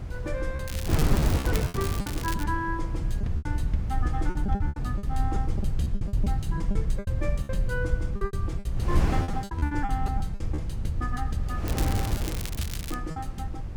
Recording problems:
low-frequency rumble; below 90 Hz, SNR -3 dB
wind on the microphone; below 210 Hz, SNR -2 dB
lost packets; 12% of the sound replaced, filled with repeated pitch periods
crackling; from 0.5 to 2.5 s and from 12 to 13 s; loose cable, SNR 3 dB

